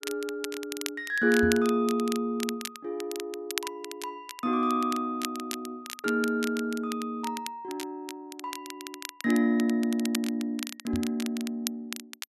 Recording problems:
crackling; vinyl, SNR 10 dB
microphone bump; at 1.5 s and at 11 s; peak 0 dB vs average level

